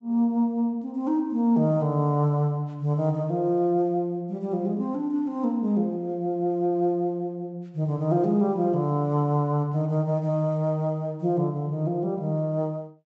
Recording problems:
low-pass filter; nothing above 7.8 kHz

